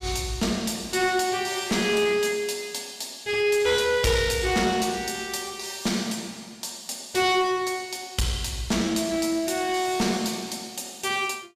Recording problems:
distorted audio; hard clipping, uneven, signal-to-distortion ratio 11 dB

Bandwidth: 15 kHz